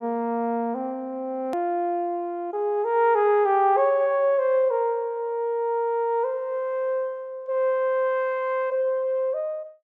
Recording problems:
click at an edit; at 1.5 s

